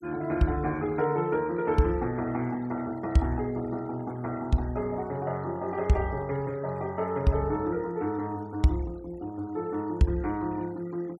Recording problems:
noise reduction artefacts; signal-to-artefact ratio 24 dB

